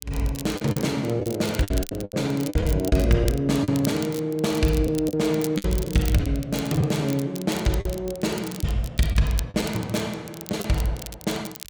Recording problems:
crackle; vinyl, SNR 14 dB
packet loss; 7% of the sound replaced, filled with the last packet

